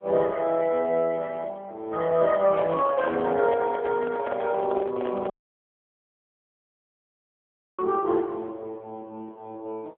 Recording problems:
telephone audio; 260 Hz to 2.6 kHz, AMR-NB
microphone handling noise; from 2.5 to 5.5 s; peak -4 dB vs average level
audio cutting out; at 5.5 s for 2.5 s

